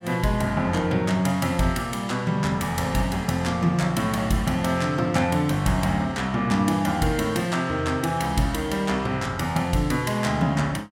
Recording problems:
none

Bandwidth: 16.5 kHz